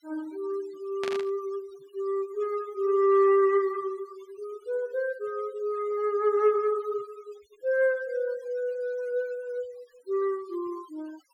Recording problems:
noise reduction artefacts; signal-to-artefact ratio 24 dB
burst of static; at 1 s; peak -4 dB vs average level

